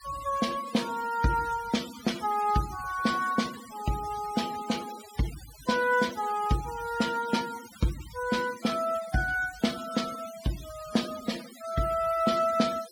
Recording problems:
denoising artefacts; signal-to-artefact ratio 14 dB

